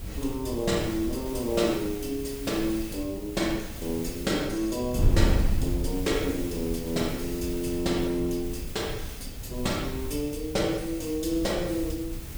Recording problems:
background hiss; slope +1 dB per octave, SNR 13 dB
wind noise; below 100 Hz, SNR 6 dB

